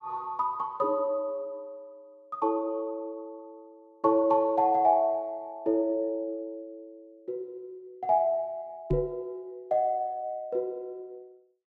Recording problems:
microphone thump; at 9 s; peak +3 dB vs average level

